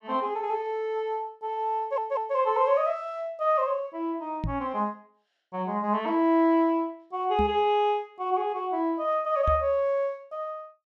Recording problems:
stutter; at 2 s
microphone thump; at 4.5 s, at 7.5 s and at 9.5 s; peak +1 dB vs average level

